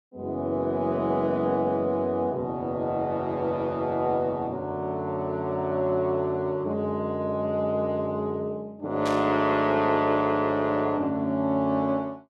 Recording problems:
burst of static; at 9 s; peak -6 dB vs average level

